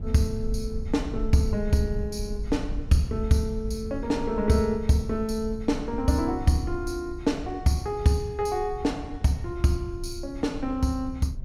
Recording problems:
rumble; below 70 Hz, SNR 10 dB

